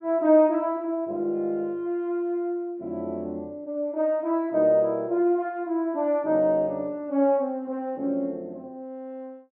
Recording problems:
none

